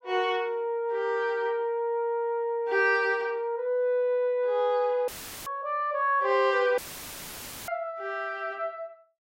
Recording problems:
dropout; at 5 s and at 7 s for 1 s; filled with static

